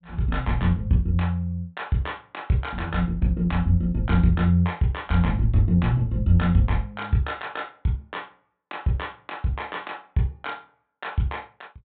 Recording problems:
low-pass filter; nothing above 4 kHz

